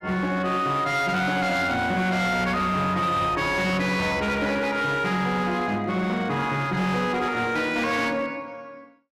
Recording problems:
distorted audio; hard clipping, signal-to-distortion ratio 11 dB

